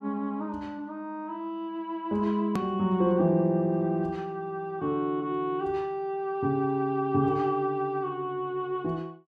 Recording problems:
edit click; at 2.5 s

